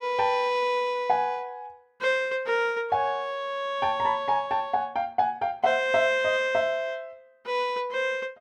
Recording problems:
none

